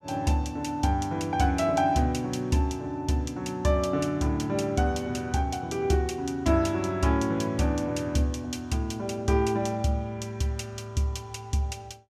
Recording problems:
none

